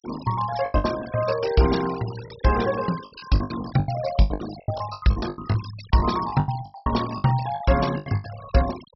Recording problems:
treble cut off; nothing above 5.6 kHz
denoising artefacts; signal-to-artefact ratio 14 dB
packet loss; 17% of the sound replaced, filled with the last packet

